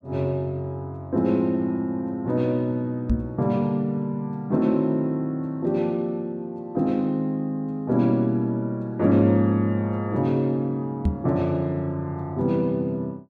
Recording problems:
microphone bump; at 3 s and at 11 s; peak +6 dB vs average level

